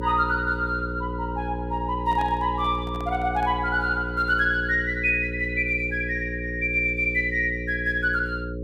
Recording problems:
hum; 60 Hz, harmonics up to 540 Hz, SNR 8 dB
microphone handling noise; from 2 to 3.5 s; peak -11 dB vs average level

